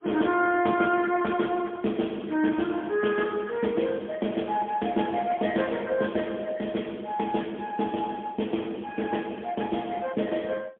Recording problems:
phone line; 240 Hz to 2.7 kHz, AMR-NB, then MP3

